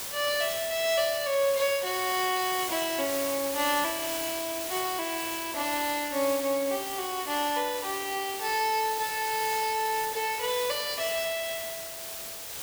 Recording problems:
hiss; slope 0 dB per octave, SNR 5 dB

